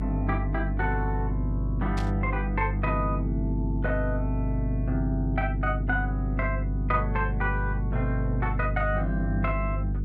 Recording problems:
electrical hum; 50 Hz, harmonics up to 350 Hz, SNR 0 dB
static burst; at 2 s; peak -5 dB vs average level

